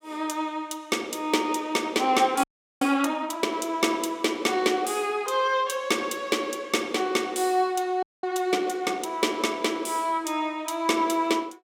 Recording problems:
frozen audio; at 2.5 s and at 8 s

